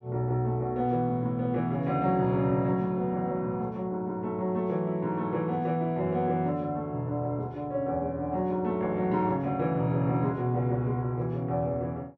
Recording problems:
none

